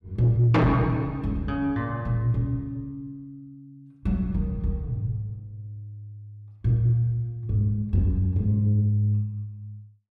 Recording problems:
distortion; soft clipping, signal-to-distortion ratio 12 dB

